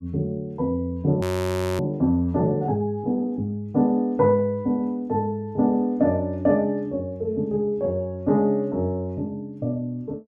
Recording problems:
audio freezing; at 1 s for 0.5 s

